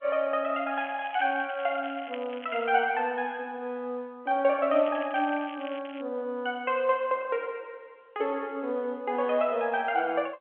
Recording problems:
phone line; 260 Hz to 3.2 kHz, G.711
crackling; from 0.5 to 2.5 s and from 4.5 to 6 s; loose cable, SNR 18 dB

